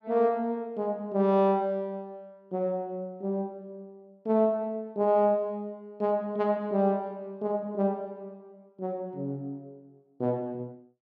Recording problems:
none

